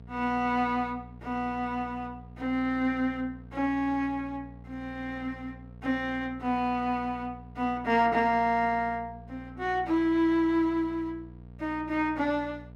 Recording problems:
hum; 60 Hz, harmonics up to 720 Hz, SNR 18 dB

